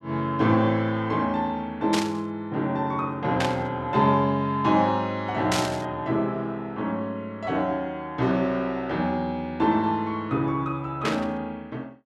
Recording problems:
static burst; 4 times, first at 2 s; peak +2 dB vs average level

